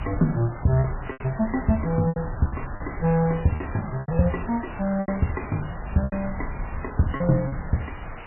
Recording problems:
lossy codec; MP3, log-spectral distance 12 dB, nothing above 3 kHz
electrical hum; 60 Hz, harmonics up to 360 Hz, SNR 23 dB
hiss; SNR 14 dB
low-frequency rumble; below 110 Hz, SNR 13 dB
packet loss; 9% of the sound replaced, filled with repeated pitch periods

